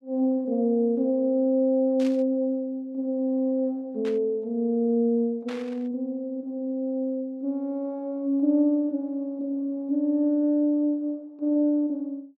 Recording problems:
burst of static; at 2 s, at 4 s and at 5.5 s; peak -11 dB vs average level

